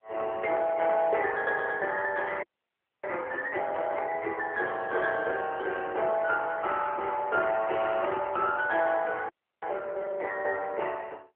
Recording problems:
phone line; 320 Hz to 3.3 kHz, AMR-NB
audio freezing; at 2.5 s for 0.5 s and at 9.5 s

